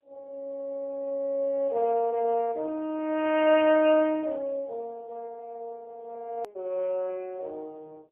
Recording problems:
phone line; 340 Hz to 3.1 kHz, AMR-NB, then MP3
hard cut with a click; at 6.5 s

